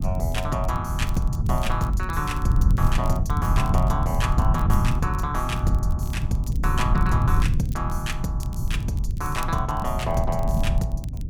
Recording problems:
rumble; below 120 Hz, SNR -2 dB
crackling; vinyl, SNR 21 dB

